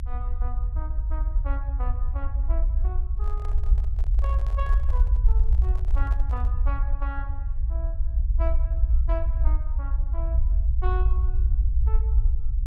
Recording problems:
low-frequency rumble; below 58 Hz, SNR -14 dB
handling noise; from 3 to 6.5 s; peak -2 dB vs average level

